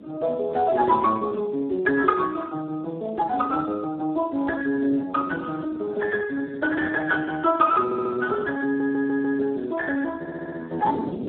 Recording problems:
telephone audio; 240 Hz to 3 kHz, Speex
wind on the microphone; below 390 Hz, SNR 18 dB
stutter; at 8 s, at 8.5 s and at 10 s

